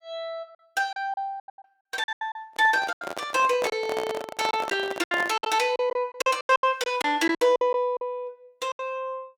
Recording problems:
packet loss; 14% of the sound replaced, filled with silence
handling noise; from 2.5 to 5.5 s; peak -1 dB vs average level

